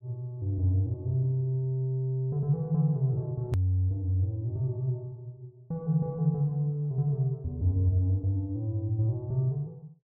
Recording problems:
click at an edit; at 3.5 s

